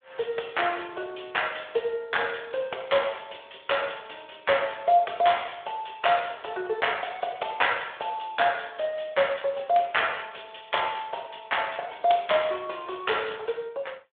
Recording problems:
phone line; 340 Hz to 3.6 kHz, Speex

